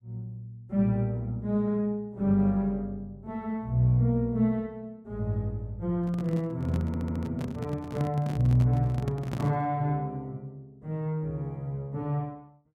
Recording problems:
handling noise; from 6 to 9.5 s; peak -1 dB vs average level
audio stuttering; at 7 s

